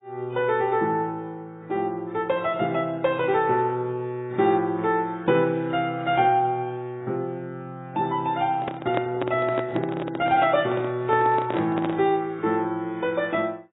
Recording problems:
codec artefacts; AAC, log-spectral distance 2 dB, nothing above 3.6 kHz
handling noise; from 8.5 to 12 s; peak +2 dB vs average level

